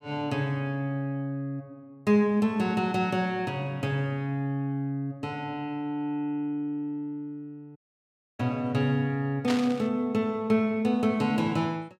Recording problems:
audio cutting out; at 8 s for 0.5 s
static burst; at 9.5 s; peak 0 dB vs average level

